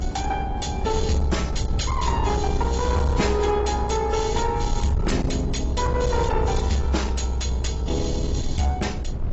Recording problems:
lossy compression; AAC, log-spectral distance 4 dB, nothing above 7.3 kHz
distorted audio; soft clipping, signal-to-distortion ratio 10 dB
rumble; below 110 Hz, SNR 2 dB
wind on the microphone; below 450 Hz, SNR 17 dB

